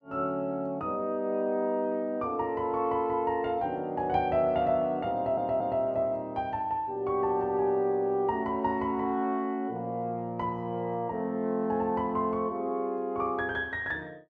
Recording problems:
stutter; at 5 s

